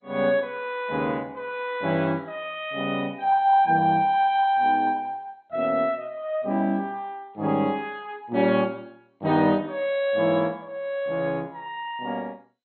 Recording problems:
lossy codec; MP2, log-spectral distance 2 dB, nothing above 3.5 kHz

